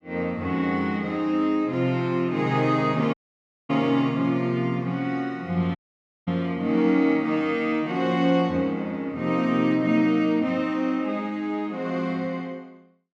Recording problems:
audio cutting out; at 3 s for 0.5 s and at 6 s for 0.5 s

